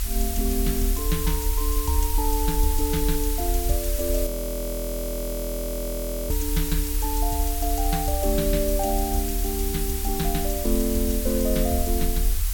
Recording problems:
background hiss; slope +3 dB per octave, SNR 2 dB
rumble; below 52 Hz, strongest tone 38 Hz, SNR 1 dB
audio freezing; at 4.5 s for 2 s

